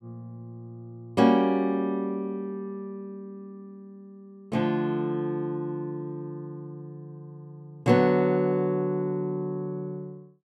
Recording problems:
none

